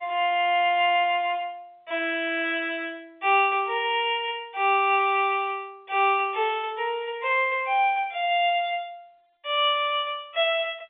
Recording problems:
phone line; 280 Hz to 3.6 kHz, G.711

